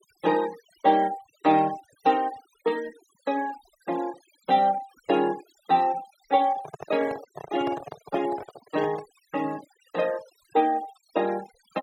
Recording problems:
denoising artefacts; signal-to-artefact ratio 19 dB
microphone handling noise; from 6.5 to 9 s; peak -5 dB vs average level

